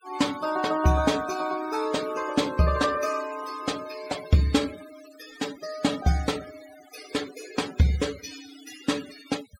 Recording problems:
denoising artefacts; signal-to-artefact ratio 15 dB

